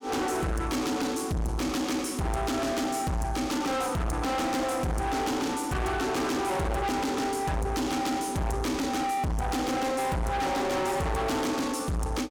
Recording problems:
distorted audio; soft clipping, signal-to-distortion ratio 6 dB

